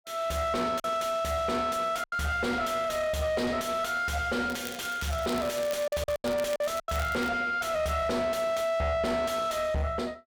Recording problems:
distortion; soft clipping, signal-to-distortion ratio 8 dB
packet loss; 4% of the sound replaced, filled with silence
crackling; from 4.5 to 7.5 s; loose cable, SNR 15 dB

